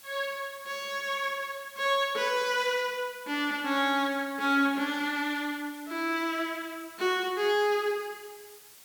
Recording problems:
hiss; slope +1 dB per octave, SNR 20 dB

